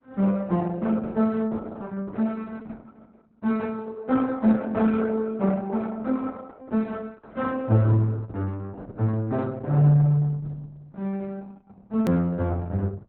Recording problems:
lossy codec; Opus, log-spectral distance 3 dB, nothing above 17.1 kHz
hard cut with a click; at 12 s

